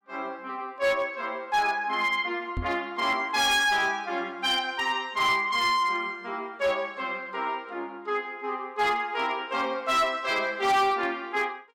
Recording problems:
distorted audio; hard clipping, signal-to-distortion ratio 12 dB
microphone bump; at 2.5 s; peak -3 dB vs average level

